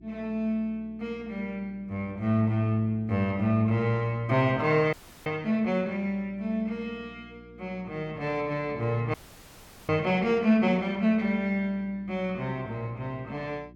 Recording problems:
hum; 60 Hz, harmonics up to 360 Hz, SNR 23 dB
frozen audio; at 5 s and at 9 s for 1 s

